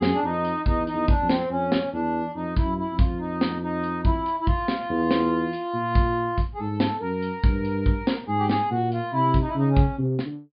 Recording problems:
treble missing; nothing above 5 kHz

